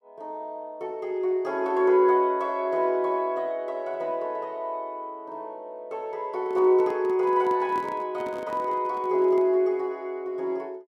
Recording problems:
microphone handling noise; from 6.5 to 9.5 s; peak -9 dB vs average level

